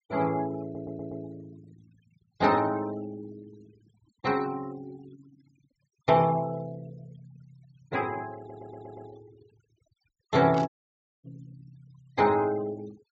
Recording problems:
treble missing; nothing above 8 kHz
noise reduction artefacts; signal-to-artefact ratio 24 dB
audio stuttering; at 0.5 s and at 8.5 s
static burst; at 11 s; peak -11 dB vs average level
dropout; at 11 s for 0.5 s

